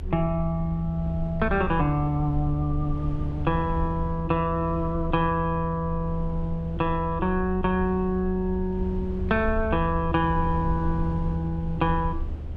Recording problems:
rumble; below 76 Hz, SNR 7 dB

